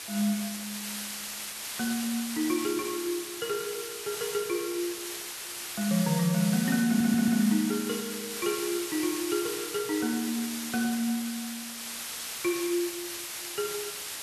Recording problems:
background hiss; slope +2 dB per octave, SNR 5 dB
stutter; at 7 s

